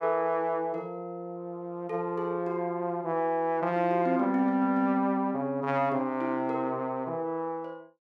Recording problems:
none

